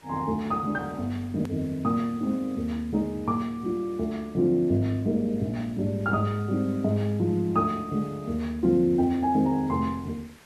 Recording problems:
hiss; SNR 26 dB
hard cut with a click; at 1.5 s

